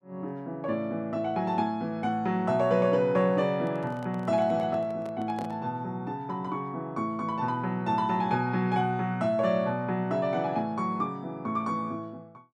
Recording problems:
handling noise; from 3.5 to 5.5 s; peak -8 dB vs average level

